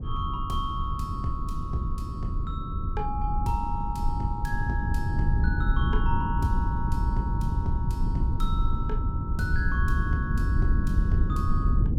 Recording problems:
low-frequency rumble; below 98 Hz, SNR -5 dB

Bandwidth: 16 kHz